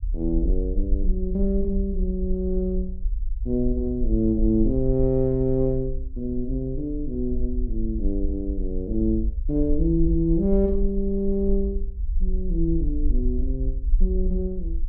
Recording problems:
rumble; below 48 Hz, strongest tone 24 Hz, SNR 3 dB

